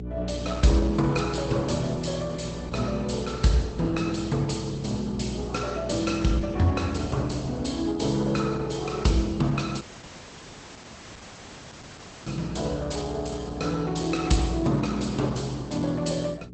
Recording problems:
codec artefacts; Opus, log-spectral distance 7 dB, nothing above 8.2 kHz
hum; 60 Hz, harmonics up to 420 Hz, SNR 10 dB
dropout; at 10 s for 2.5 s

